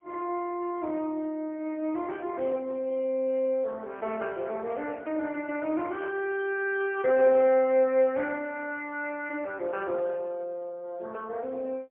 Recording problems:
telephone audio; 260 Hz to 3.1 kHz, AMR-NB, then MP3

